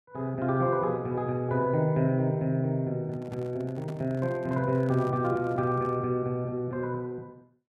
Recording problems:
handling noise; from 3 to 6 s; peak -12 dB vs average level

